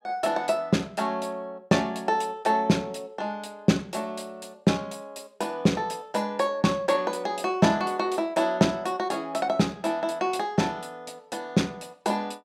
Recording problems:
none

